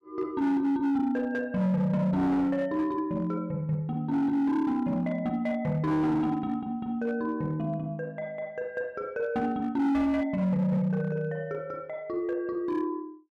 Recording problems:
distortion; hard clipping, signal-to-distortion ratio 12 dB

